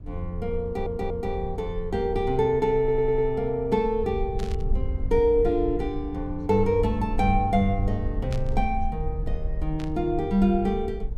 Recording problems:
rumble; below 64 Hz, SNR 8 dB
audio stuttering; at 0.5 s and at 3 s
static burst; at 4.5 s, at 8.5 s and at 10 s; peak -11 dB vs average level

